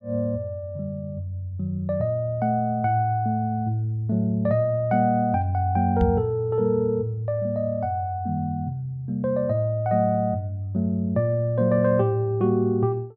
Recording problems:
knock on the microphone; at 6 s; peak +4 dB vs average level

